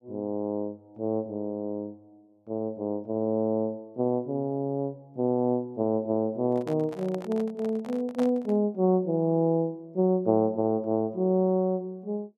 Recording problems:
handling noise; from 6.5 to 8.5 s; peak -6 dB vs average level

